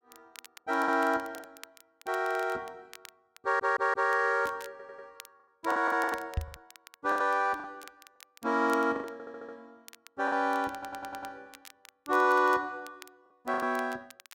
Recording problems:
crackling; vinyl, SNR 23 dB
packet loss; 9% of the sound replaced, filled with the last packet
stutter; 4 times, first at 3.5 s
knock on the microphone; at 6.5 s; peak +1 dB vs average level

